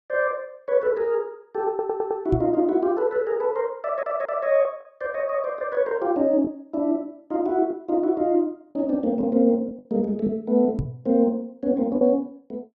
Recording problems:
lost packets; 3% of the sound replaced, filled with the last packet
stutter; at 1.5 s and at 4 s
microphone bump; at 2.5 s and at 11 s; peak +1 dB vs average level

